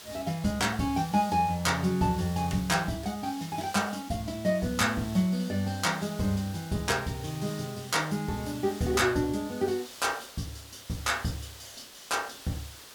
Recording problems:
background hiss; slope 0 dB per octave, SNR 16 dB

